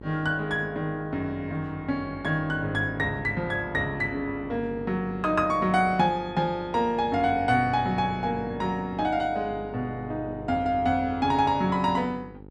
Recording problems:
hum; 50 Hz, harmonics up to 950 Hz, SNR 16 dB

